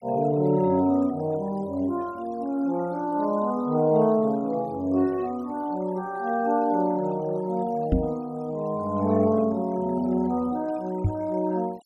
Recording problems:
denoising artefacts; signal-to-artefact ratio 25 dB
microphone thump; at 8 s and at 11 s; peak +5 dB vs average level

